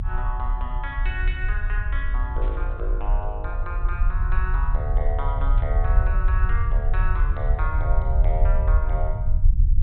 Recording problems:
low-pass filter; nothing above 4 kHz
rumble; below 58 Hz, strongest tone 36 Hz, SNR -8 dB
static burst; at 2.5 s, at 5.5 s and at 7 s; peak -11 dB vs average level

